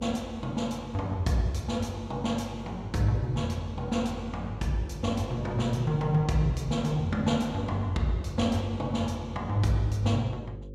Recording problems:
hum; 50 Hz, harmonics up to 550 Hz, SNR 14 dB

